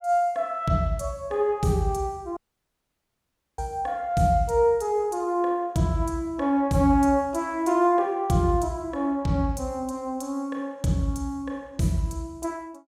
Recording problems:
dropout; at 2.5 s for 1 s

